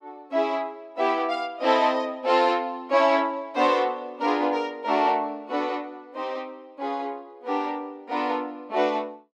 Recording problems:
none

